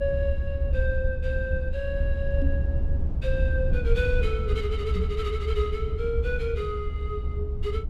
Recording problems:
low-frequency rumble; below 72 Hz, SNR -3 dB
microphone bump; at 2.5 s and at 5 s; peak +1 dB vs average level

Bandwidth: 15.5 kHz